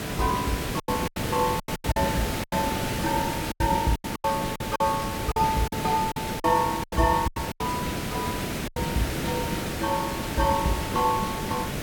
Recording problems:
background hiss; SNR 2 dB
packet loss; 11% of the sound replaced, filled with silence

